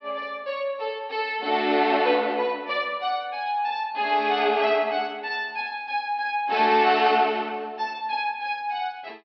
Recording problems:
treble cut off; nothing above 5.5 kHz

